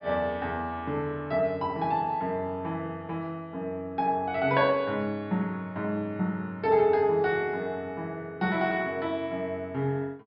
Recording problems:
low-pass filter; nothing above 5.5 kHz

